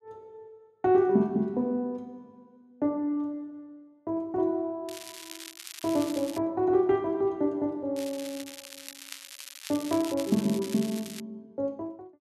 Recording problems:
crackling; from 5 to 6.5 s and from 8 to 11 s; loose cable, SNR 13 dB

